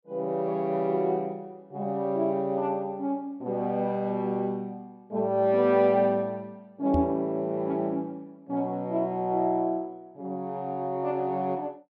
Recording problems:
knock on the microphone; at 7 s; peak +5 dB vs average level

